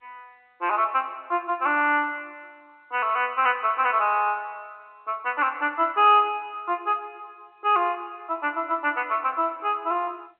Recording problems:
telephone audio; 260 Hz to 3.2 kHz, G.711

